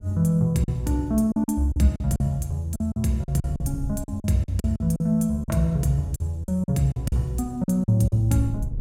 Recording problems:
wind noise; below 140 Hz, SNR 17 dB
lost packets; 12% of the sound replaced, filled with silence

